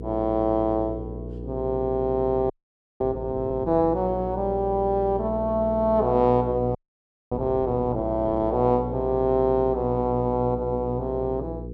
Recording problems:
hum; 60 Hz, harmonics up to 480 Hz, SNR 11 dB
audio freezing; at 2.5 s for 0.5 s and at 7 s for 0.5 s

